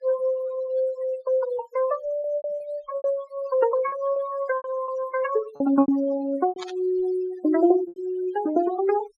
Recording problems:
denoising artefacts; signal-to-artefact ratio 17 dB
lost packets; 8% of the sound replaced, filled with repeated pitch periods
burst of static; at 6.5 s; peak -8 dB vs average level

